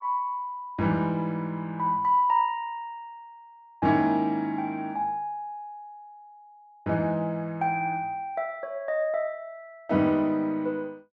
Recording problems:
none

